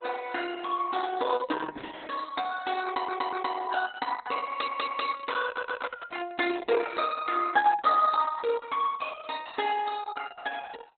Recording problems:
lossy codec; Opus, log-spectral distance 5 dB, nothing above 4 kHz
stutter; at 3 s, at 4.5 s and at 5.5 s

